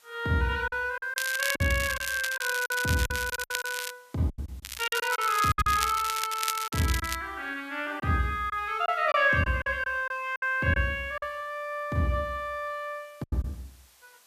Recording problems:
background hiss; SNR 29 dB
packet loss; 8% of the sound replaced, filled with silence
crackling; from 1 to 4 s and from 4.5 to 7 s; loose cable, SNR 6 dB

